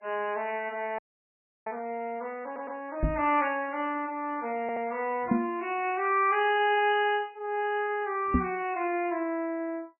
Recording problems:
lossy codec; MP3, log-spectral distance 2 dB, nothing above 2.6 kHz
audio freezing; at 1 s for 0.5 s
stutter; at 2.5 s and at 4.5 s
knock on the microphone; at 3 s, at 5.5 s and at 8.5 s; peak +8 dB vs average level

